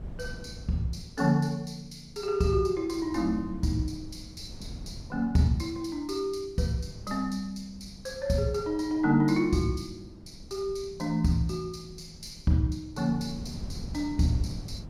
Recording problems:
wind on the microphone; below 180 Hz, SNR 16 dB

